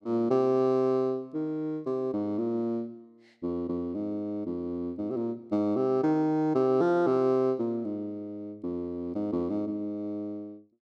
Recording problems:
none

